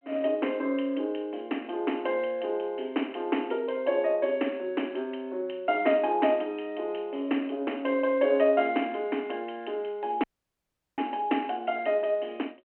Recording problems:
phone line; 240 Hz to 3.1 kHz, G.726
audio cutting out; at 10 s for 0.5 s

